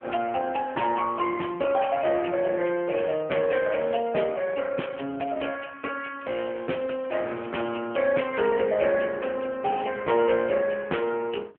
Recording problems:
telephone audio; 280 Hz to 2.9 kHz, AMR-NB
crackling; at 1 s, at 3.5 s and from 6 to 8 s; loose cable, SNR 27 dB

